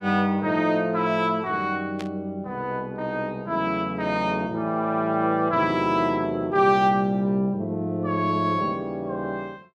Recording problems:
burst of static; at 2 s; peak -9 dB vs average level

